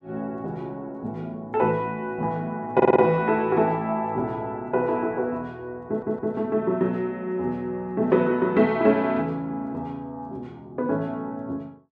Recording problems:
audio stuttering; at 3 s and at 6 s

